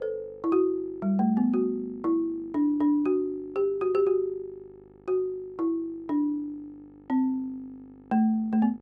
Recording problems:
hum; 50 Hz, harmonics up to 1.4 kHz, SNR 28 dB

